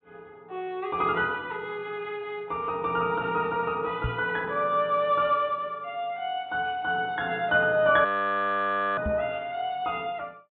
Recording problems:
low-pass filter; nothing above 4 kHz
microphone bump; at 4 s and at 9 s; peak +1 dB vs average level
frozen audio; at 8 s for 1 s

